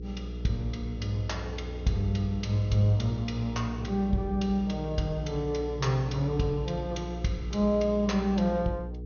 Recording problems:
treble cut off; nothing above 6.5 kHz
hum; 60 Hz, harmonics up to 480 Hz, SNR 9 dB

